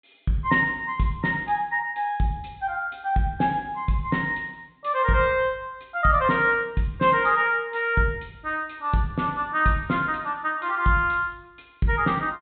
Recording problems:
treble missing; nothing above 4 kHz

